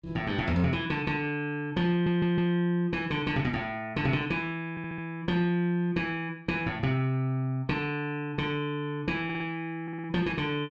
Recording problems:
audio stuttering; 4 times, first at 2 s

